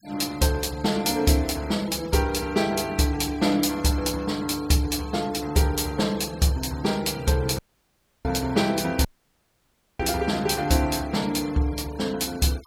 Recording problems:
denoising artefacts; signal-to-artefact ratio 21 dB
dropout; at 7.5 s for 0.5 s and at 9 s for 1 s

